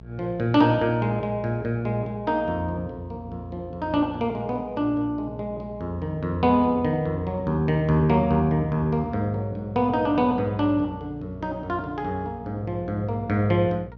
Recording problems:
hum; 60 Hz, harmonics up to 660 Hz, SNR 19 dB

